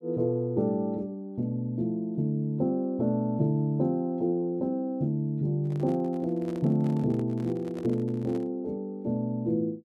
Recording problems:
microphone handling noise; from 5.5 to 8.5 s; peak -11 dB vs average level

